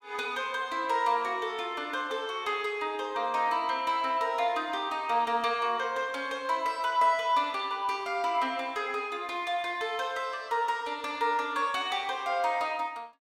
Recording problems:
none

